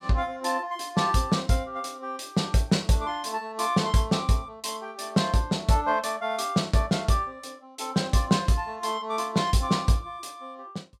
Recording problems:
none

